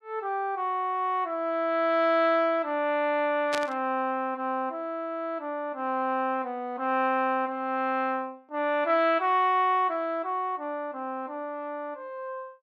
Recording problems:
burst of static; at 3.5 s; peak 0 dB vs average level

